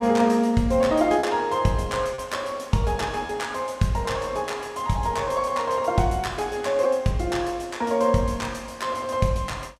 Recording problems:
lost packets; 1.2% of the sound replaced, filled with repeated pitch periods

